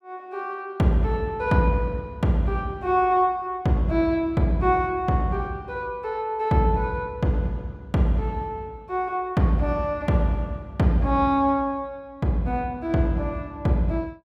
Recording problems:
none

